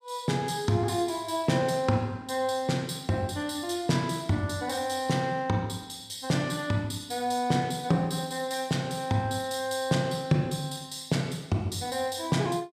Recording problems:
none

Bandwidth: 15 kHz